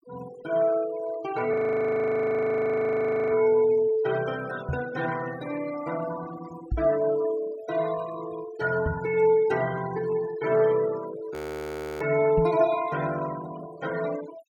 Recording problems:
denoising artefacts; signal-to-artefact ratio 16 dB
frozen audio; at 1.5 s for 2 s and at 11 s for 0.5 s
microphone bump; 4 times, first at 4.5 s; peak +1 dB vs average level

